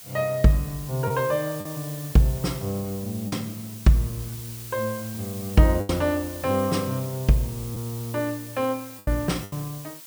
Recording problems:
background hiss; slope +1 dB per octave, SNR 13 dB
packet loss; 4% of the sound replaced, filled with the last packet

